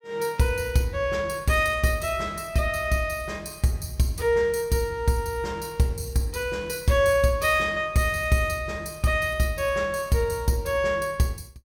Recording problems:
none

